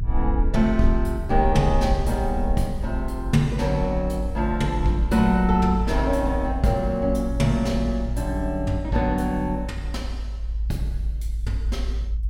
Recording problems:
low-frequency rumble; below 56 Hz, strongest tone 54 Hz, SNR 5 dB

